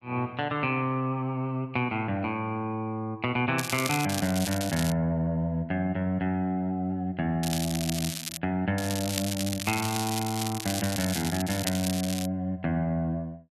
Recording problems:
crackling; from 3.5 to 5 s, at 7.5 s and from 9 to 12 s; loose cable, SNR 5 dB

